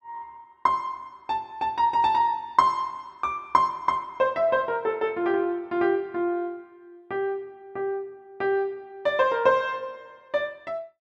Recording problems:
none

